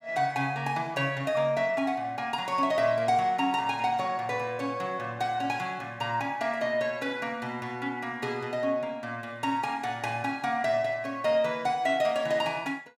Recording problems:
none

